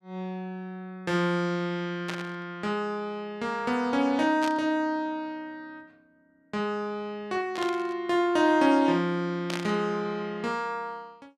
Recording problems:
static burst; 4 times, first at 2 s; peak -2 dB vs average level

